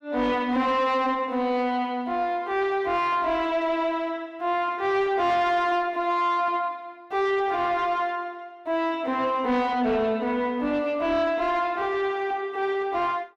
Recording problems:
distorted audio; soft clipping, signal-to-distortion ratio 11 dB

